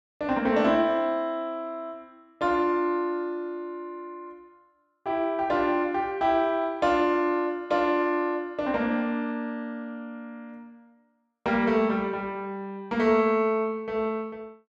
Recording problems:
none

